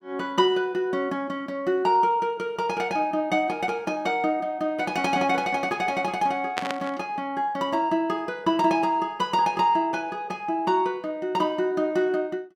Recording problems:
burst of static; at 6.5 s; peak +1 dB vs average level

